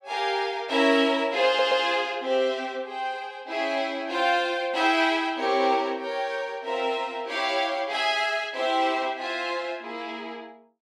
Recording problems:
audio stuttering; at 1.5 s

